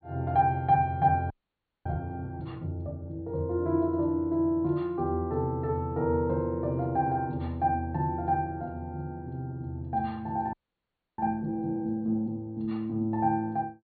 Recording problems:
treble missing; nothing above 4.5 kHz
frozen audio; at 1.5 s for 0.5 s and at 11 s for 0.5 s

